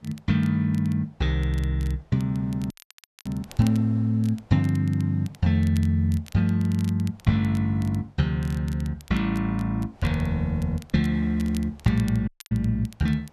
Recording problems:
wind noise; below 920 Hz, SNR 30 dB
crackling; vinyl, SNR 24 dB
dropout; at 2.5 s for 0.5 s and at 12 s

